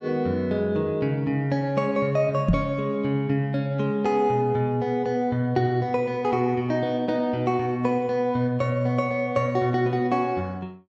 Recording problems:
microphone bump; at 2.5 s; peak +7 dB vs average level

